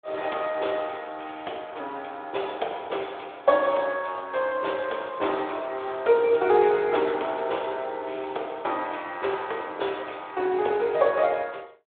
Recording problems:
phone line; 320 Hz to 3.5 kHz, Speex

